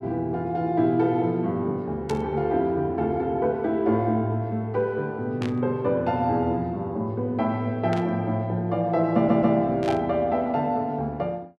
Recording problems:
burst of static; 4 times, first at 2 s; peak -8 dB vs average level
audio stuttering; at 9 s

